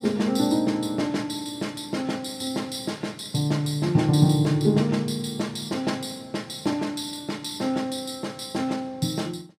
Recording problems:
none

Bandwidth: 15 kHz